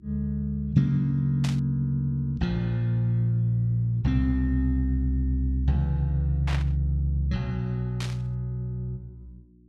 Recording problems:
electrical hum; 60 Hz, harmonics up to 360 Hz, SNR 27 dB
burst of static; at 1.5 s, at 6.5 s and at 8 s; peak -5 dB vs average level

